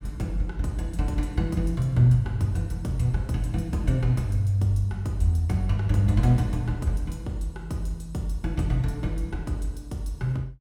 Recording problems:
none

